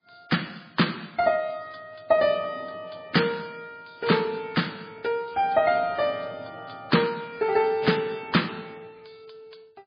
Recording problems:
lossy compression; MP3, log-spectral distance 8 dB

